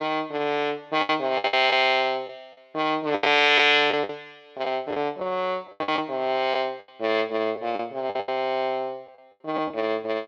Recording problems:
lost packets; 9% of the sound replaced, filled with the last packet

